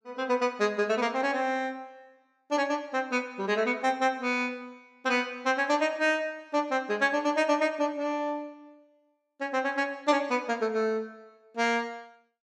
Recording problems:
none

